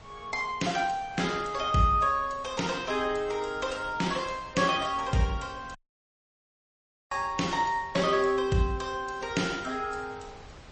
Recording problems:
codec artefacts; MP3, log-spectral distance 4 dB, nothing above 8.2 kHz
wind noise; below 1.6 kHz, SNR 21 dB
audio cutting out; at 6 s for 1.5 s

